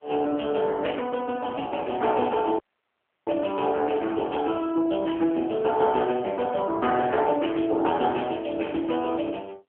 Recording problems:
telephone audio; 300 Hz to 3.2 kHz, AMR-NB
dropout; at 2.5 s for 0.5 s

